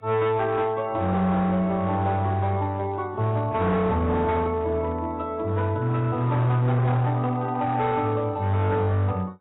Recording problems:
lossy compression; AAC, log-spectral distance 2 dB, nothing above 3.8 kHz
distortion; hard clipping, signal-to-distortion ratio 11 dB

